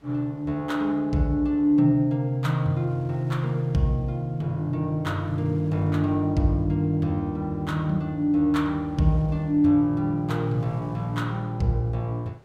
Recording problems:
wind on the microphone; below 760 Hz, SNR 28 dB

